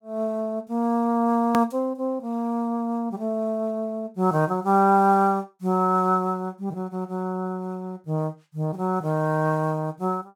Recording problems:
edit click; at 1.5 s

